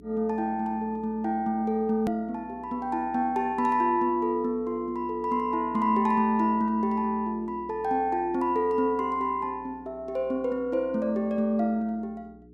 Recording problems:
electrical hum; 60 Hz, harmonics up to 420 Hz, SNR 23 dB
edit click; at 2 s

